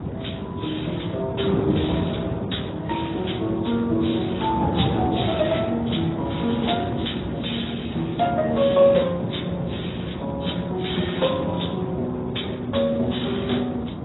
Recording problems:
lossy compression; Speex, then AAC, log-spectral distance 7 dB, nothing above 3.8 kHz
wind noise; below 420 Hz, SNR 5 dB

